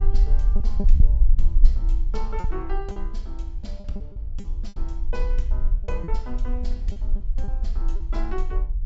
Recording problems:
treble missing; nothing above 8 kHz
low-frequency rumble; below 44 Hz, strongest tone 18 Hz, SNR -11 dB
lost packets; 8% of the sound replaced, filled with repeated pitch periods

